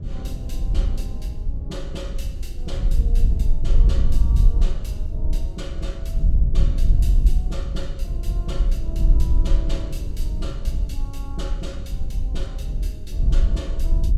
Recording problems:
low-frequency rumble; below 92 Hz, SNR 0 dB
wind on the microphone; below 56 Hz, SNR -13 dB

